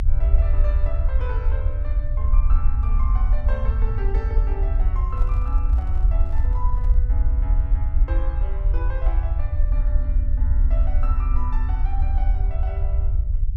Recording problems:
low-frequency rumble; below 62 Hz, SNR -14 dB
microphone handling noise; from 5 to 7 s; peak -5 dB vs average level

